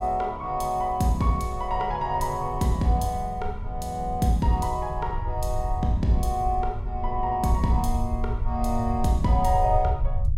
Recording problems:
low-frequency rumble; below 76 Hz, SNR 7 dB

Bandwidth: 16 kHz